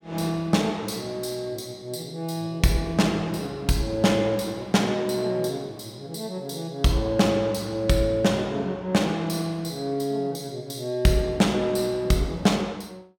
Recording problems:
none

